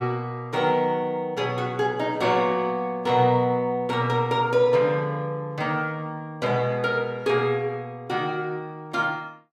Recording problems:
none

